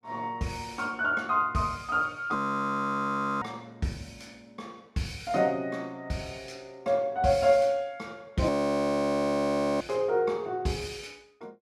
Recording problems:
audio freezing; at 2.5 s for 1 s and at 8.5 s for 1.5 s

